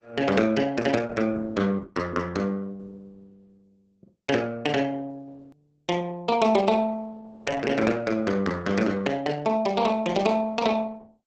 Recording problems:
lossy compression; Opus, log-spectral distance 3 dB, nothing above 7.8 kHz
click at an edit; at 5.5 s

